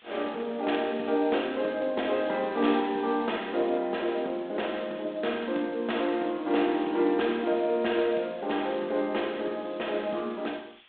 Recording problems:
phone line; 220 Hz to 3.7 kHz, G.726
background hiss; SNR 27 dB

